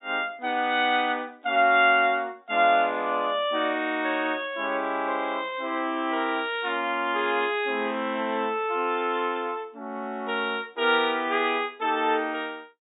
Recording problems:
treble cut off; nothing above 4 kHz

